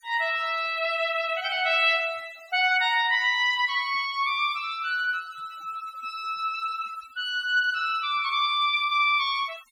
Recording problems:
denoising artefacts; signal-to-artefact ratio 24 dB

